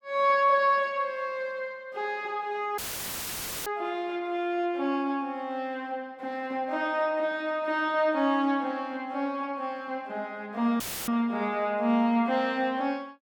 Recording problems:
dropout; at 3 s for 1 s and at 11 s; filled with static

